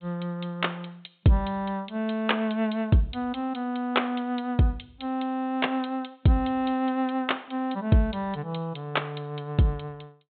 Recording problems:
treble cut off; nothing above 4 kHz

